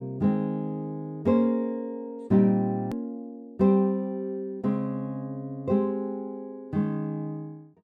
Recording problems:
hard cut with a click; at 3 s

